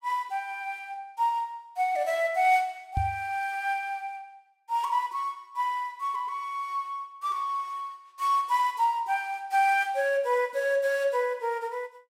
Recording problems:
microphone thump; at 3 s; peak +2 dB vs average level

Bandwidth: 16 kHz